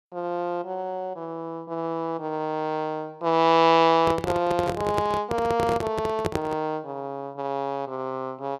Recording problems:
handling noise; from 4 to 6.5 s; peak +3 dB vs average level

